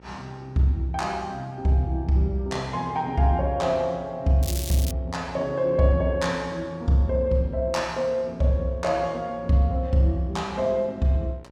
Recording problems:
hum; 60 Hz, harmonics up to 1.9 kHz, SNR 26 dB
crackling; at 4.5 s; loose cable, SNR 10 dB

